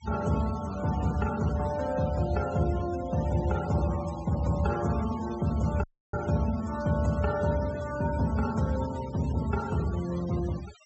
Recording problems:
low-pass filter; nothing above 7.9 kHz
noise reduction artefacts; signal-to-artefact ratio 17 dB
dropout; at 6 s

